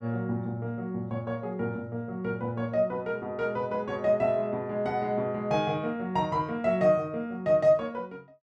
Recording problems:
none

